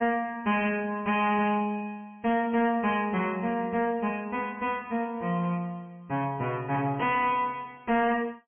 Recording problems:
treble missing; nothing above 2.7 kHz
lossy compression; MP3, then MP3, log-spectral distance 2 dB
distortion; soft clipping, signal-to-distortion ratio 11 dB

